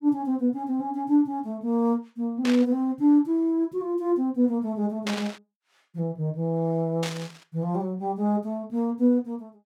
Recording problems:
burst of static; at 2.5 s, at 5 s and at 7 s; peak -1 dB vs average level

